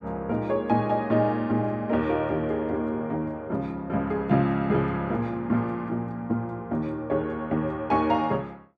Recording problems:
none

